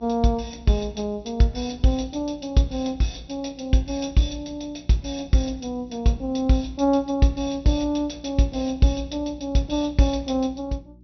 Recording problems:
treble cut off; nothing above 6 kHz
hum; 60 Hz, harmonics up to 360 Hz, SNR 24 dB

